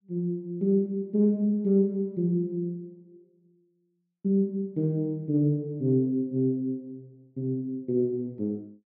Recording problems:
none

